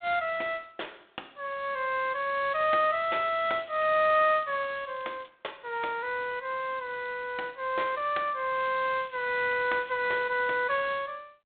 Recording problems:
phone line; 260 Hz to 3.9 kHz, G.726
crackling; from 2.5 to 4 s, from 4 to 5.5 s and from 8.5 to 10 s; loose cable, SNR 27 dB

